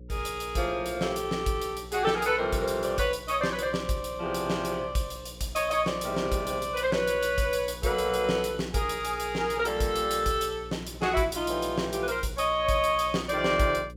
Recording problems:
hum; 60 Hz, harmonics up to 540 Hz, SNR 18 dB

